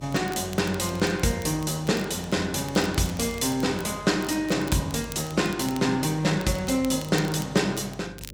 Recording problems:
hum; 50 Hz, harmonics up to 600 Hz, SNR 20 dB
crackling; vinyl, SNR 19 dB

